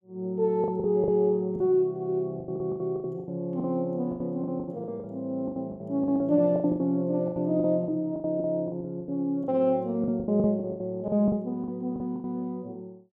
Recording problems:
lost packets; 17% of the sound replaced, filled with the last packet

